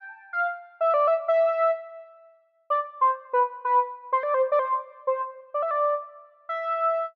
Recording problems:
none

